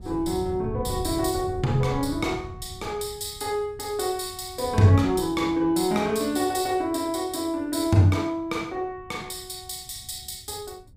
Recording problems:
wind noise; below 130 Hz, SNR 13 dB

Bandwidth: 15.5 kHz